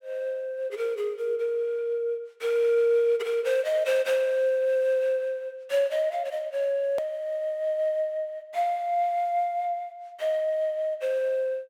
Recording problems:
hard cut with a click; at 7 s

